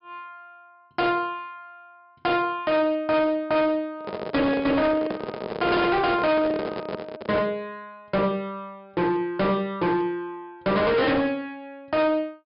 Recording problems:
treble cut off; nothing above 5.5 kHz
distortion; hard clipping, signal-to-distortion ratio 8 dB
microphone handling noise; from 4 to 7.5 s; peak +1 dB vs average level

